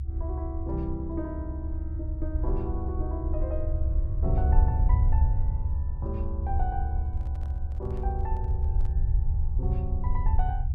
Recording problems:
low-frequency rumble; below 74 Hz, SNR -8 dB
microphone handling noise; from 7 to 9 s; peak -12 dB vs average level

